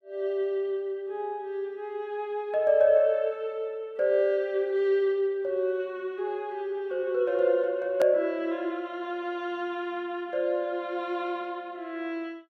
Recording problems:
hard cut with a click; at 8 s

